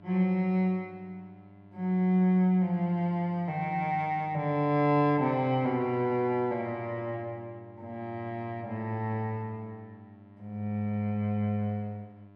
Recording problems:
hum; 50 Hz, harmonics up to 1.4 kHz, SNR 25 dB

